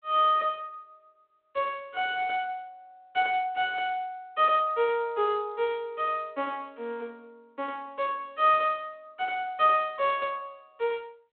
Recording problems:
phone line; 280 Hz to 3.7 kHz, G.726

